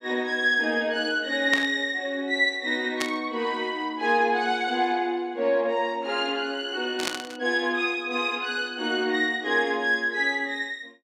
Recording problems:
burst of static; at 1.5 s, at 3 s and at 7 s; peak +1 dB vs average level

